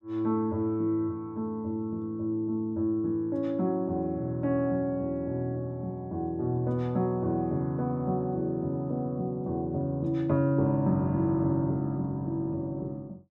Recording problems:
none

